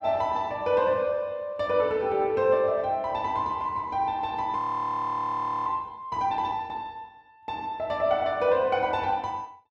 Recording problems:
audio freezing; at 4.5 s for 1 s

